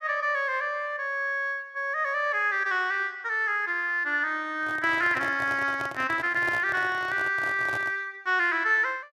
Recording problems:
handling noise; from 4.5 to 8 s; peak -6 dB vs average level

